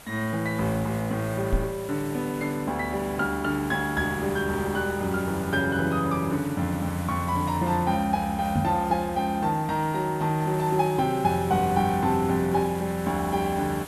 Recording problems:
background hiss; slope -3 dB per octave, SNR 16 dB
knock on the microphone; at 1.5 s and at 8.5 s; peak +4 dB vs average level

